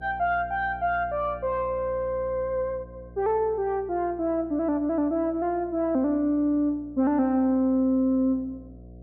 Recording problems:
hum; 60 Hz, harmonics up to 720 Hz, SNR 21 dB

